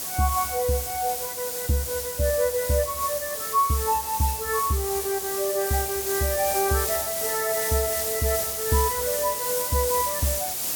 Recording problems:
hiss; SNR 1 dB

